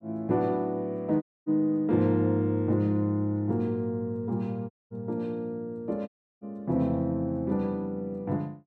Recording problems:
dropout; at 1 s, at 4.5 s and at 6 s

